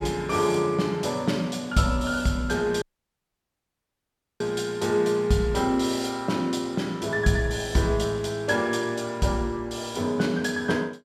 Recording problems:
dropout; at 3 s for 1.5 s

